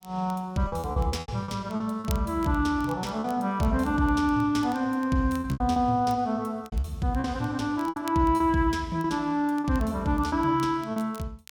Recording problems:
crackling; vinyl, SNR 25 dB
lost packets; 9% of the sound replaced, filled with repeated pitch periods

